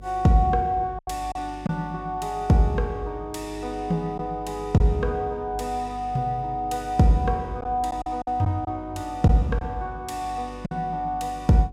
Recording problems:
hum; 50 Hz, harmonics up to 550 Hz, SNR 17 dB
lost packets; 3% of the sound replaced, filled with silence

